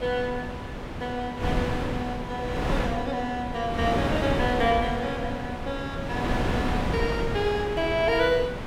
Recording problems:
wind on the microphone; below 710 Hz, SNR 2 dB

